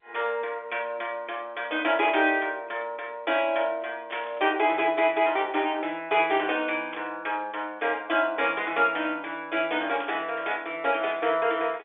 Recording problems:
phone line; 300 Hz to 3.5 kHz, G.711
burst of static; 4 times, first at 2 s; peak -6 dB vs average level

